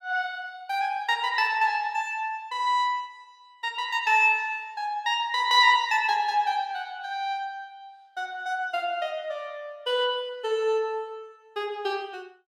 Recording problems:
none

